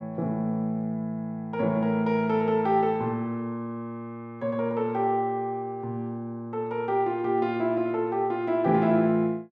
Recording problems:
none

